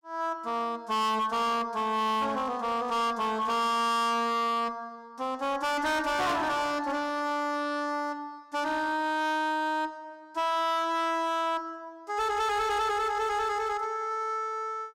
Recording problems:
distorted audio; hard clipping, signal-to-distortion ratio 7 dB

